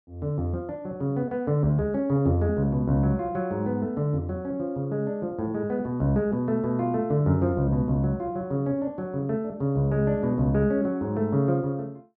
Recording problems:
none

